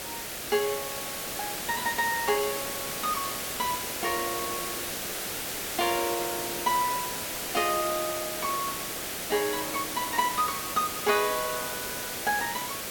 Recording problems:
hiss; SNR 1 dB

